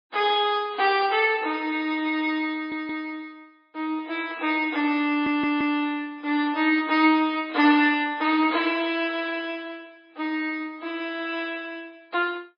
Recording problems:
lossy codec; MP3, log-spectral distance 3 dB, nothing above 5 kHz
stutter; at 2.5 s and at 5 s

